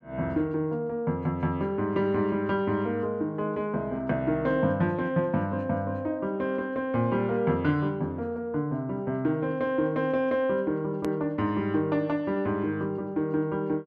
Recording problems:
hard cut with a click; at 11 s

